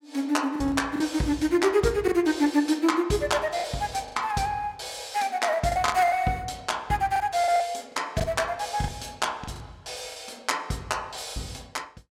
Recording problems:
packet loss; 7% of the sound replaced, filled with the last packet

